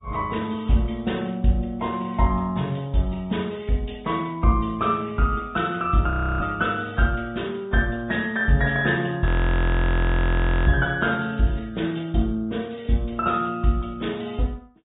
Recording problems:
treble cut off; nothing above 3.7 kHz
codec artefacts; AAC, log-spectral distance 3 dB
frozen audio; at 6 s and at 9.5 s for 1.5 s

